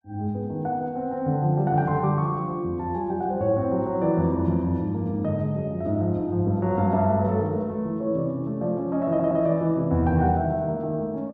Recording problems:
audio stuttering; at 9 s

